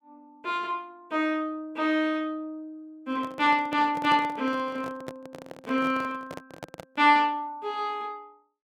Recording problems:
handling noise; from 3 to 7 s; peak -5 dB vs average level

